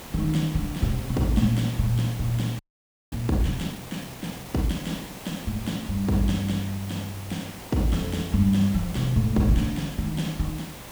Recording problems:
hum; 60 Hz, harmonics up to 960 Hz, SNR 30 dB
background hiss; slope -4 dB per octave, SNR 13 dB
frozen audio; at 2.5 s for 0.5 s

